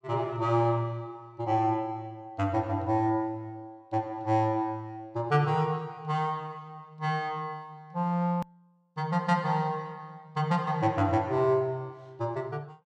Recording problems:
hard cut with a click; at 8.5 s

